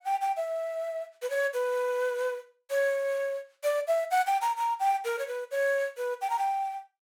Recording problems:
none

